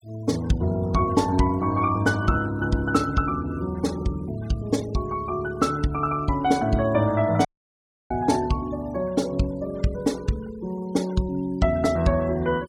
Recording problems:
denoising artefacts; signal-to-artefact ratio 22 dB
dropout; at 7.5 s for 0.5 s

